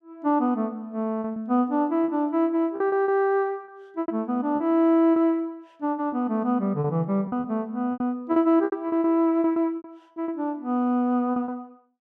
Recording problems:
lost packets; 10% of the sound replaced, filled with repeated pitch periods

